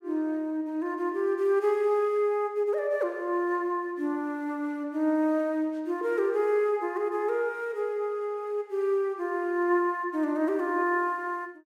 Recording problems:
none

